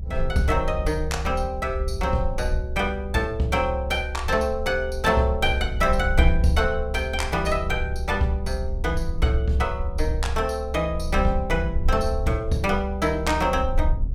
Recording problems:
low-frequency rumble; below 68 Hz, SNR 5 dB

